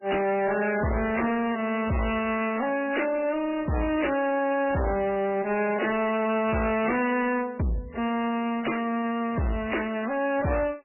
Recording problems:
codec artefacts; MP3, log-spectral distance 6 dB, nothing above 2.7 kHz
distorted audio; hard clipping, uneven, signal-to-distortion ratio 7 dB

